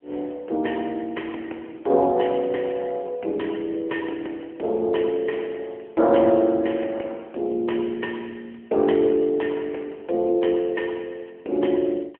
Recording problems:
phone line; 260 Hz to 3.2 kHz, AMR-NB

